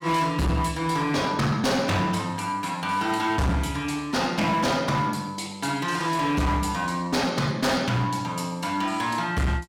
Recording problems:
distortion; hard clipping, uneven, signal-to-distortion ratio 8 dB

